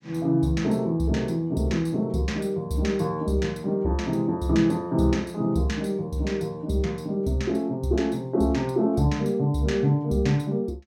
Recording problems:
none

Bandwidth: 16 kHz